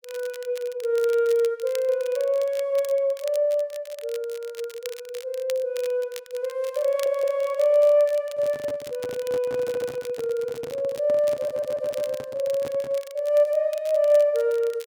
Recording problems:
crackle; vinyl, SNR 20 dB
stutter; at 7 s, at 9.5 s and at 11 s
handling noise; from 8.5 to 13 s; peak -9 dB vs average level

